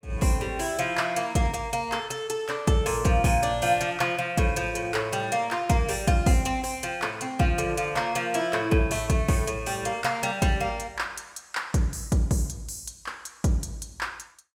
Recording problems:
none

